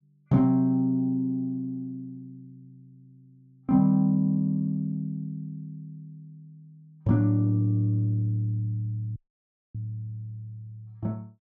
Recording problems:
audio cutting out; at 9 s for 0.5 s

